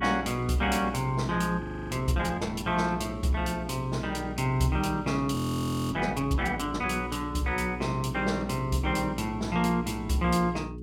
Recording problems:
hum; 60 Hz, harmonics up to 420 Hz, SNR 10 dB
audio freezing; at 1.5 s and at 5.5 s for 0.5 s

